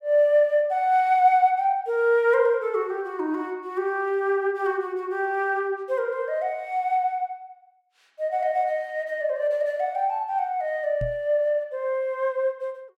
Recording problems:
microphone thump; at 11 s; peak -4 dB vs average level

